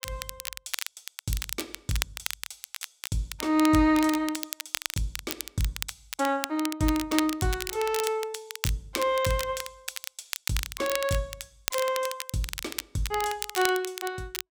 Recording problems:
crackling; vinyl, SNR 6 dB

